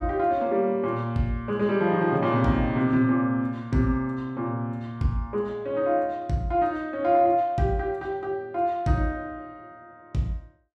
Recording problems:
none

